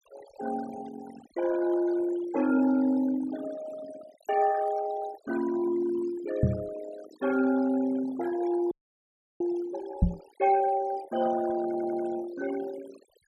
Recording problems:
denoising artefacts; signal-to-artefact ratio 14 dB
knock on the microphone; at 6.5 s and at 10 s; peak +9 dB vs average level
frozen audio; at 8.5 s for 0.5 s
audio stuttering; at 12 s

